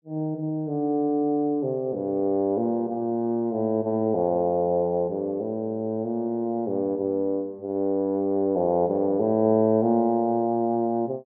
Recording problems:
none

